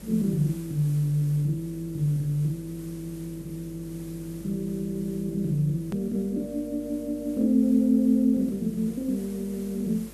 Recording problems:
electrical hum; 50 Hz, harmonics up to 600 Hz, SNR 20 dB
background hiss; slope -2 dB per octave, SNR 23 dB
hard cut with a click; at 6 s

